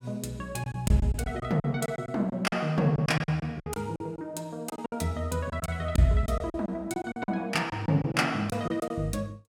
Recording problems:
lost packets; 12% of the sound replaced, filled with silence

